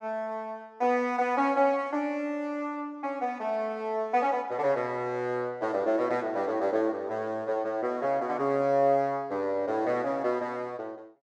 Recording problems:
none

